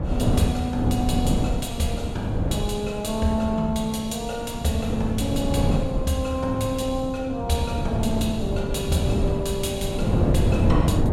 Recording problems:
wind noise; below 250 Hz, SNR 0 dB

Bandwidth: 16 kHz